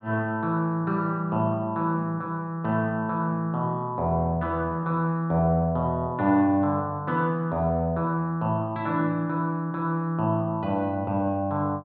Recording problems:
none

